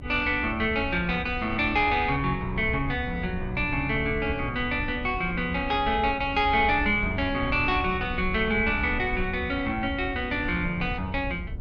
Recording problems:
low-frequency rumble; below 110 Hz, SNR 11 dB

